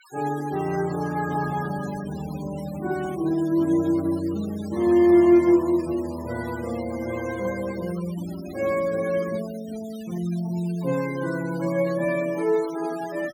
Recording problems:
denoising artefacts; signal-to-artefact ratio 19 dB

